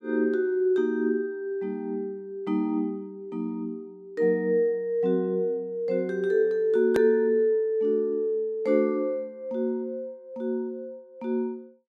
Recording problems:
edit click; at 7 s

